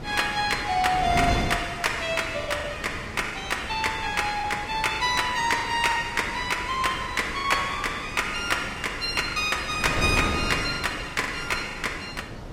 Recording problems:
codec artefacts; Vorbis, log-spectral distance 4 dB, nothing above 16.5 kHz
wind on the microphone; below 590 Hz, SNR 10 dB
packet loss; 6% of the sound replaced, filled with the last packet

